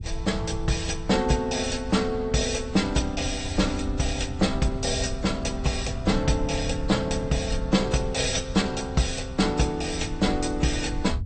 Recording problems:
codec artefacts; AAC, then MP2, log-spectral distance 4 dB, nothing above 8.5 kHz
low-frequency rumble; below 94 Hz, SNR 9 dB

